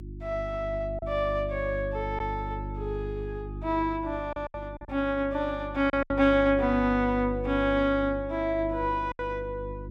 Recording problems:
hum; 50 Hz, harmonics up to 350 Hz, SNR 10 dB
lost packets; 4% of the sound replaced, filled with silence

